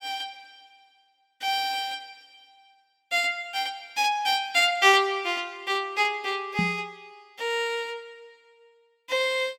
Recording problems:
microphone thump; at 6.5 s; peak +1 dB vs average level

